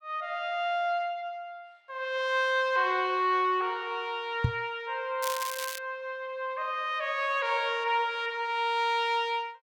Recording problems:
knock on the microphone; at 4.5 s; peak +6 dB vs average level
crackle; at 5 s; loose cable, SNR 8 dB

